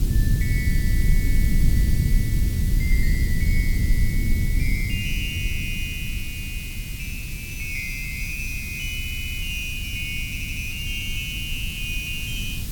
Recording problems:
background hiss; slope +2 dB per octave, SNR 6 dB
low-frequency rumble; below 100 Hz, SNR -4 dB
audio stuttering; at 9 s and at 10 s

